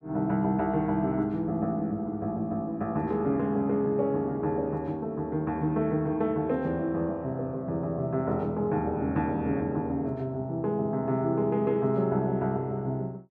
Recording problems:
none

